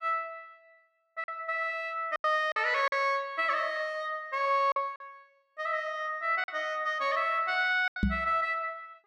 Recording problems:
lost packets; 5% of the sound replaced, filled with silence
knock on the microphone; at 8 s; peak +5 dB vs average level

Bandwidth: 12.5 kHz